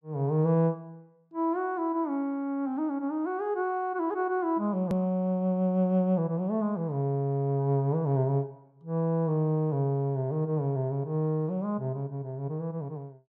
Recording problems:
edit click; at 5 s

